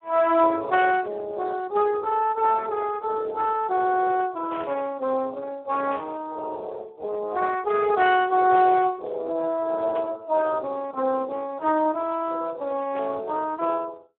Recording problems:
phone line; 280 Hz to 3.7 kHz, Speex
static burst; 5 times, first at 4.5 s; peak -12 dB vs average level

